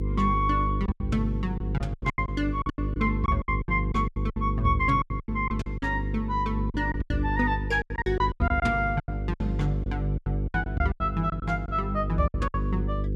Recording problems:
hum; 50 Hz, harmonics up to 500 Hz, SNR 2 dB
lost packets; 16% of the sound replaced, filled with silence

